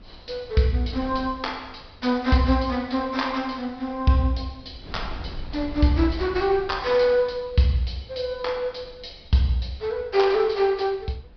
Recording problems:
treble cut off; nothing above 5.5 kHz
wind noise; below 160 Hz, SNR 19 dB

